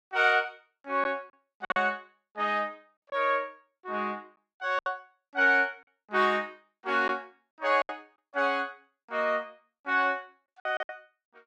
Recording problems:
lost packets; 6% of the sound replaced, filled with silence

